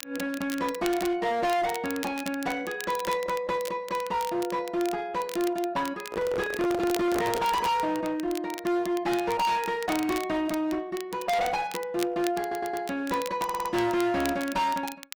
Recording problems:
codec artefacts; Opus, log-spectral distance 2 dB, nothing above 19.5 kHz
distortion; hard clipping, uneven, signal-to-distortion ratio 6 dB
crackling; vinyl, SNR 14 dB
microphone handling noise; from 6 to 7.5 s; peak +1 dB vs average level
stutter; at 12 s and at 13 s

